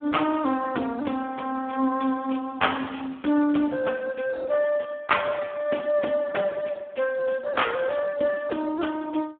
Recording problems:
telephone audio; 190 Hz to 3.4 kHz, Speex

